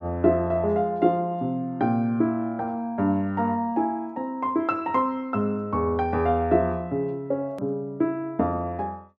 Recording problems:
edit click; at 7.5 s

